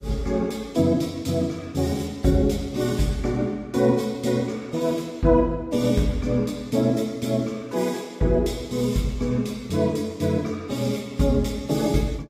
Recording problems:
lossy codec; AAC, log-spectral distance 3 dB, nothing above 15.5 kHz

